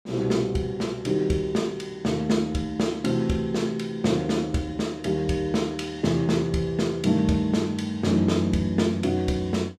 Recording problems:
none

